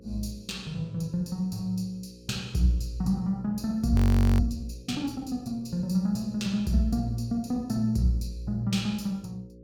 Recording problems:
electrical hum; 60 Hz, harmonics up to 540 Hz, SNR 22 dB
audio freezing; at 4 s

